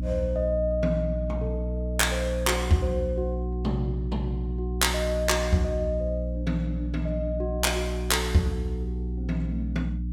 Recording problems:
electrical hum; 60 Hz, harmonics up to 300 Hz, SNR 3 dB

